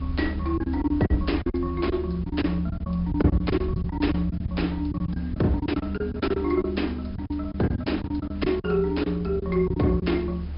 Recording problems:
low-pass filter; nothing above 5.2 kHz
lossy codec; Opus, log-spectral distance 2 dB
background hiss; slope -6 dB per octave, SNR 21 dB
rumble; below 86 Hz, strongest tone 74 Hz, SNR 6 dB
lost packets; 12% of the sound replaced, filled with silence

